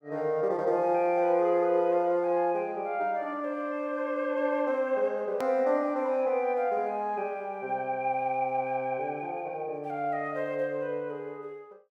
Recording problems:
edit click; at 5.5 s

